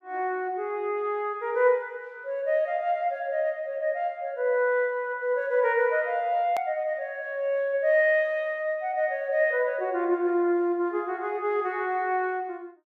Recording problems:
click at an edit; at 6.5 s

